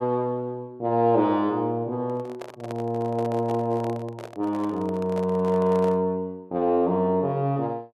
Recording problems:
handling noise; from 2 to 6 s; peak -8 dB vs average level

